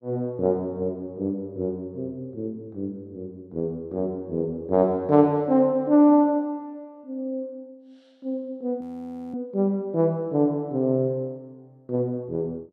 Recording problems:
audio freezing; at 9 s for 0.5 s

